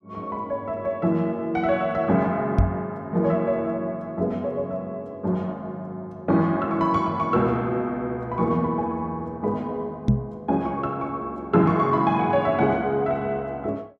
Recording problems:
microphone thump; at 2.5 s and at 10 s; peak +9 dB vs average level

